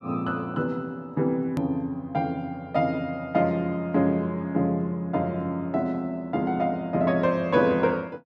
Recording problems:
click at an edit; at 1.5 s

